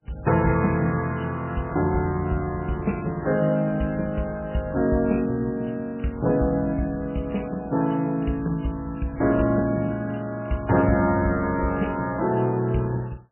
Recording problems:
lossy codec; MP3, log-spectral distance 3 dB, nothing above 2.9 kHz

